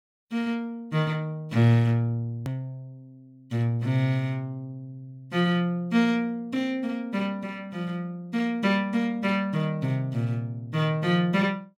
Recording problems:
edit click; at 2.5 s

